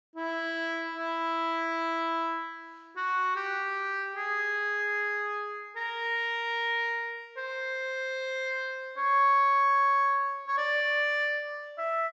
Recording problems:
treble missing; nothing above 8 kHz

